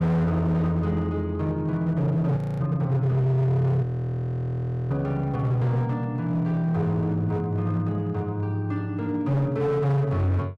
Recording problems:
distorted audio; hard clipping, signal-to-distortion ratio 8 dB
frozen audio; at 2.5 s and at 4 s for 1 s

